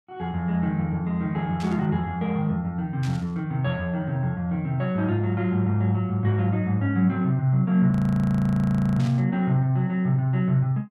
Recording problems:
burst of static; at 1.5 s, at 3 s and at 9 s; peak -12 dB vs average level
frozen audio; at 8 s for 1 s

